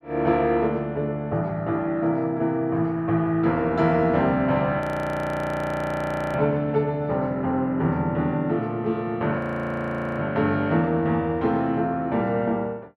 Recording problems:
frozen audio; at 5 s for 1.5 s and at 9.5 s for 1 s

